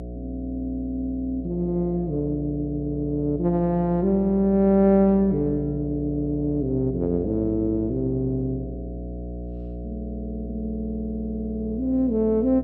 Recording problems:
electrical hum; 60 Hz, harmonics up to 720 Hz, SNR 11 dB

